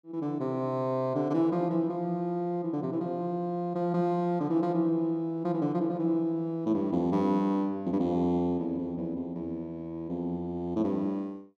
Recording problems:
none

